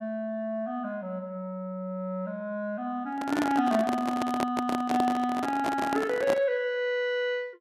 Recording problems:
microphone handling noise; from 3 to 6.5 s; peak +2 dB vs average level

